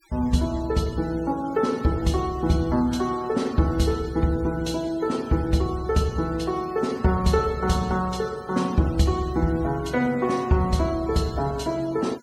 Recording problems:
denoising artefacts; signal-to-artefact ratio 22 dB

